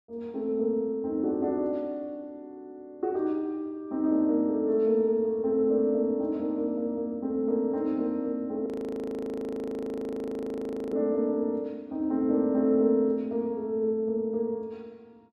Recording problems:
frozen audio; at 8.5 s for 2.5 s

